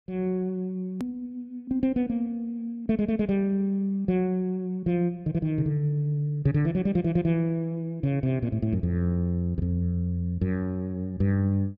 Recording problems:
click at an edit; at 1 s

